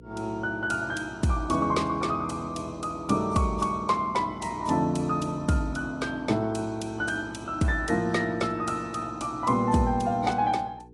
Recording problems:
lossy codec; AAC, log-spectral distance 2 dB, nothing above 10.4 kHz
electrical hum; 60 Hz, harmonics up to 480 Hz, SNR 22 dB

